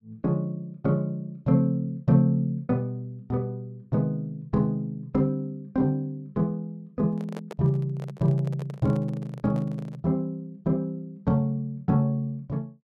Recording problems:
microphone handling noise; from 7 to 10 s; peak -7 dB vs average level

